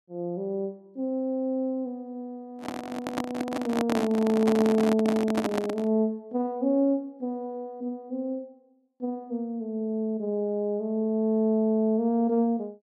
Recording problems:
microphone handling noise; from 2.5 to 6 s; peak +2 dB vs average level

